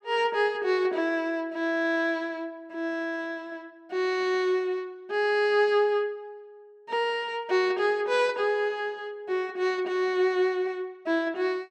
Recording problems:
none

